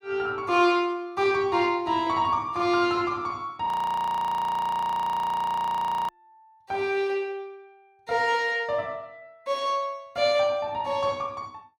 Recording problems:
audio freezing; at 3.5 s for 2.5 s

